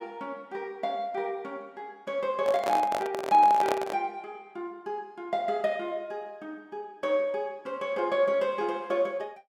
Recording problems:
microphone handling noise; from 2.5 to 4 s; peak +3 dB vs average level

